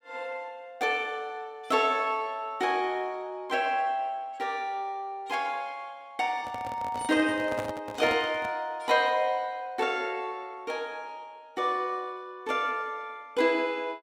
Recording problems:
handling noise; from 6.5 to 8.5 s; peak -2 dB vs average level

